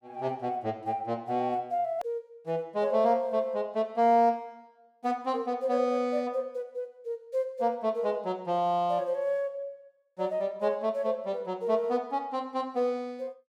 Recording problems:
hard cut with a click; at 2 s

